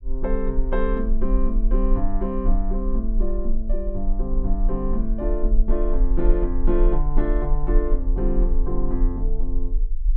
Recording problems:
rumble; below 36 Hz, strongest tone 22 Hz, SNR -2 dB

